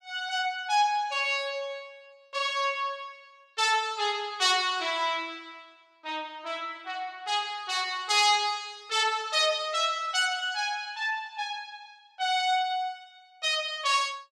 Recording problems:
none

